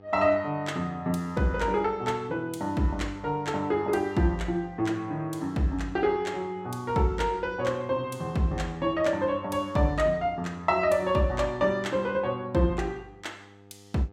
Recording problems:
electrical hum; 50 Hz, harmonics up to 1.3 kHz, SNR 25 dB

